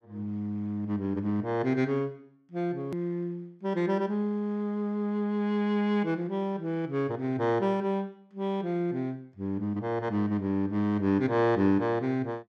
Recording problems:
edit click; at 3 s

